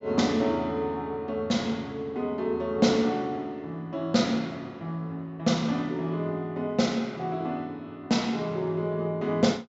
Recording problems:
low-pass filter; nothing above 8 kHz

